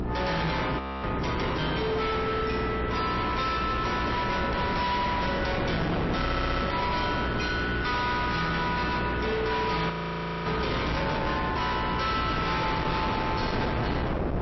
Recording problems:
lossy codec; MP3, log-spectral distance 4 dB, nothing above 5.7 kHz
distortion; soft clipping, signal-to-distortion ratio 6 dB
hum; 60 Hz, harmonics up to 1.6 kHz, SNR 5 dB
wind noise; below 980 Hz, SNR 4 dB
frozen audio; at 1 s and at 10 s for 0.5 s
stutter; at 6 s

